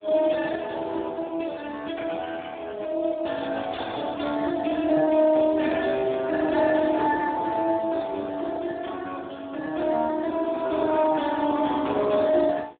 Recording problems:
telephone audio; 260 Hz to 3.5 kHz, Speex

